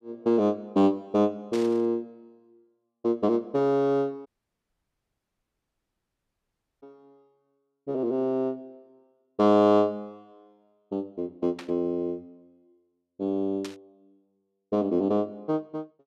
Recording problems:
burst of static; at 1.5 s, at 12 s and at 14 s; peak -9 dB vs average level
dropout; at 4.5 s for 2.5 s

